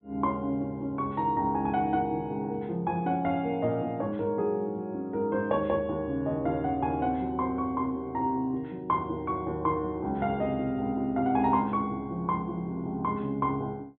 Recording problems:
treble cut off; nothing above 4 kHz

